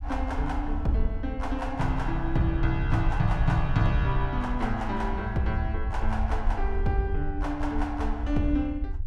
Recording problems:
rumble; below 64 Hz, SNR 3 dB

